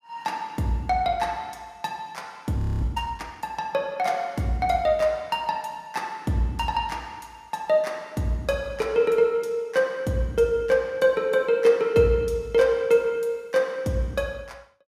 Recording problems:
audio freezing; at 2.5 s

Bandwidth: 15 kHz